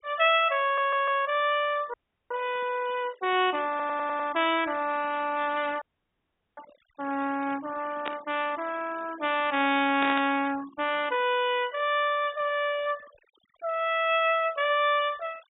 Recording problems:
treble cut off; nothing above 4 kHz
noise reduction artefacts; signal-to-artefact ratio 20 dB
audio stuttering; at 0.5 s and at 3.5 s
dropout; at 2 s and at 6 s for 1 s
burst of static; at 8 s and at 10 s; peak -3 dB vs average level

